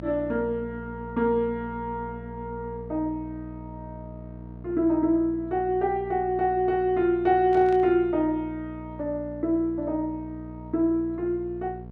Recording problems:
hum; 60 Hz, harmonics up to 900 Hz, SNR 15 dB
burst of static; at 7.5 s; peak -16 dB vs average level

